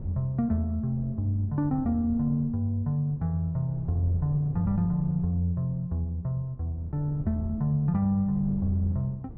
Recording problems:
wind on the microphone; below 160 Hz, SNR 15 dB

